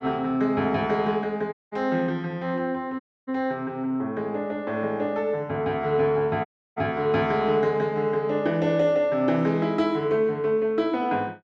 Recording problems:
audio cutting out; at 1.5 s, at 3 s and at 6.5 s

